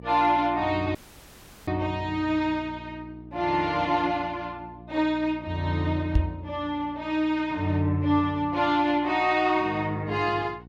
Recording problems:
hum; 60 Hz, harmonics up to 780 Hz, SNR 20 dB
audio cutting out; at 1 s for 0.5 s
microphone thump; at 6 s; peak +7 dB vs average level

